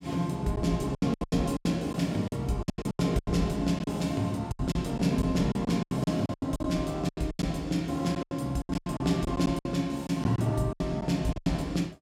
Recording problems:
lost packets; 16% of the sound replaced, filled with silence

